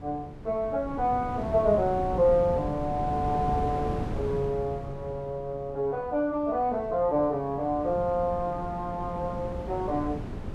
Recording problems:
wind on the microphone; below 330 Hz, SNR 9 dB

